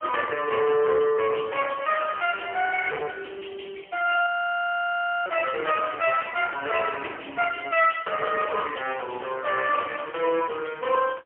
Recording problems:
telephone audio; 320 Hz to 2.9 kHz, AMR-NB, then MP3
distorted audio; soft clipping, signal-to-distortion ratio 10 dB
audio freezing; at 4.5 s for 1 s

